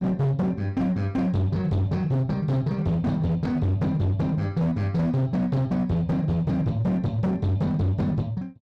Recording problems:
distortion; hard clipping, signal-to-distortion ratio 7 dB

